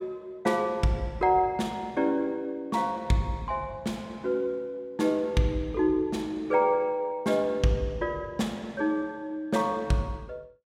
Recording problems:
none

